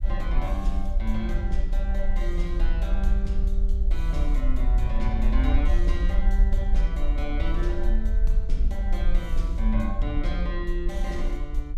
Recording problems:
rumble; below 48 Hz, SNR -6 dB

